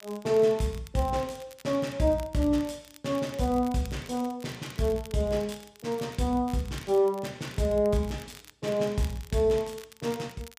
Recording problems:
crackle; vinyl, SNR 21 dB

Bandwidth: 15 kHz